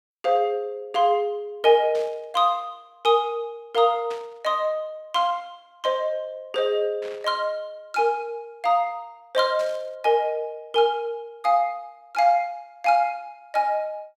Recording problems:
static burst; 4 times, first at 2 s; peak -12 dB vs average level

